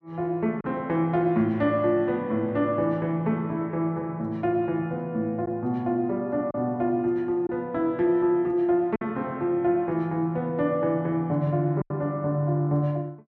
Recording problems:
packet loss; 1.7% of the sound replaced, filled with silence

